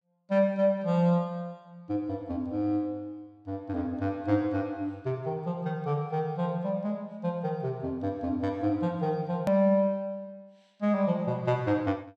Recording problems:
click at an edit; at 9.5 s

